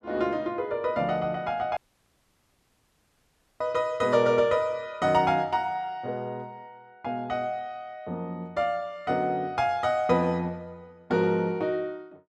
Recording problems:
dropout; at 2 s for 2 s

